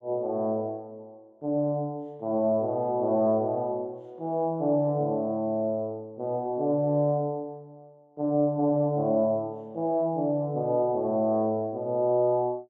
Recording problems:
none

